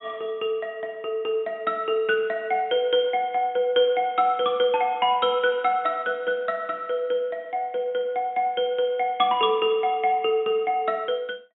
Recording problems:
treble cut off; nothing above 3.7 kHz

